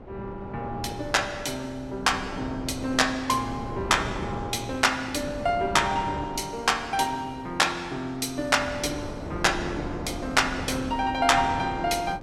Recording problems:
wind noise; below 520 Hz, SNR 11 dB

